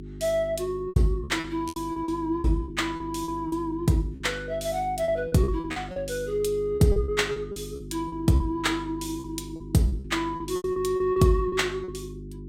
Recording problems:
electrical hum; 50 Hz, harmonics up to 400 Hz, SNR 13 dB
lost packets; 14% of the sound replaced, filled with repeated pitch periods

